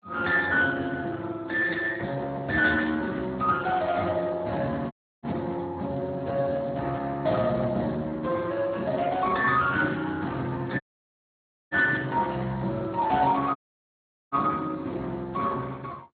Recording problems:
codec artefacts; MP2, then Speex, log-spectral distance 3 dB, nothing above 3.9 kHz
dropout; at 5 s, at 11 s for 1 s and at 14 s for 1 s

